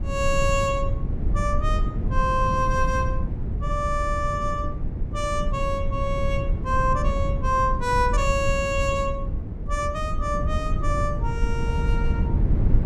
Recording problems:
mains hum; 60 Hz, harmonics up to 540 Hz, SNR 22 dB
rumble; below 100 Hz, SNR 1 dB

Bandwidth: 14 kHz